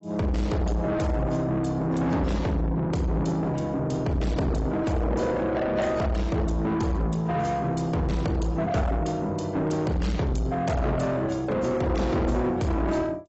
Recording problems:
codec artefacts; AAC, log-spectral distance 2 dB, nothing above 7.8 kHz
distortion; soft clipping, signal-to-distortion ratio 8 dB

